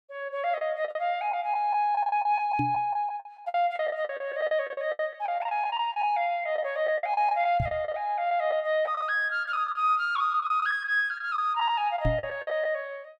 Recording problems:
packet loss; 12% of the sound replaced, filled with the last packet
microphone thump; at 2.5 s, at 7.5 s and at 12 s; peak +3 dB vs average level

